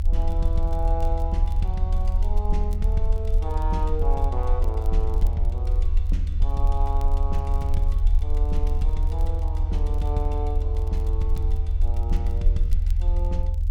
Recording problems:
low-frequency rumble; below 76 Hz, SNR -8 dB
crackle; vinyl, SNR 23 dB

